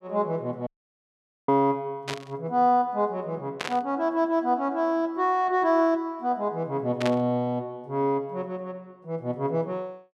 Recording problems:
audio cutting out; at 0.5 s for 1 s
burst of static; at 2 s, at 3.5 s and at 7 s; peak 0 dB vs average level

